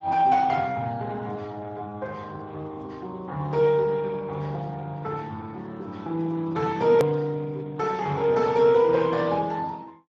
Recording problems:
lossy compression; Speex, log-spectral distance 3 dB, nothing above 13.7 kHz
edit click; at 7 s

